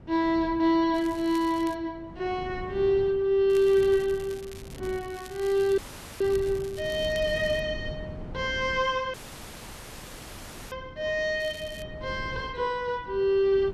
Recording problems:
wind on the microphone; below 250 Hz, SNR 16 dB
crackle; at 1 s, from 3.5 to 7.5 s and at 11 s; loose cable, SNR 22 dB
audio cutting out; at 6 s and at 9 s for 1.5 s

